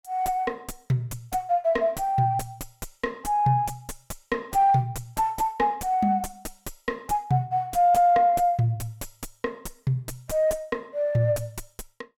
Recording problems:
distortion; soft clipping, signal-to-distortion ratio 10 dB

